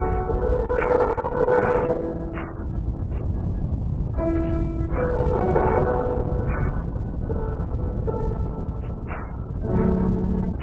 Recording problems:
lossy compression; MP3, then Opus, log-spectral distance 2 dB
low-frequency rumble; below 120 Hz, SNR 0 dB

